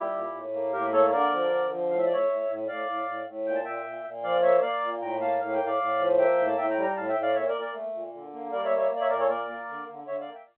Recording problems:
telephone audio; 260 Hz to 3.5 kHz, G.711

